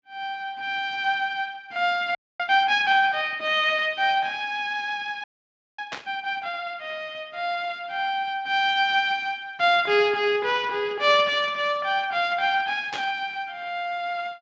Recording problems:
codec artefacts; Speex, log-spectral distance 3 dB
audio freezing; at 2 s and at 5 s for 0.5 s
static burst; at 6 s and at 13 s; peak -5 dB vs average level

